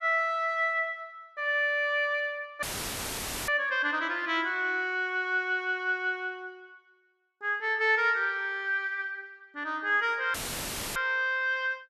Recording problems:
dropout; at 2.5 s for 1 s and at 10 s for 0.5 s; filled with static

